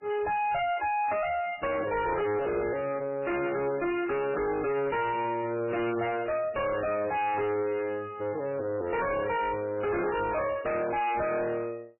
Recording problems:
lossy codec; MP3, log-spectral distance 4 dB, nothing above 2.5 kHz
distorted audio; soft clipping, signal-to-distortion ratio 6 dB

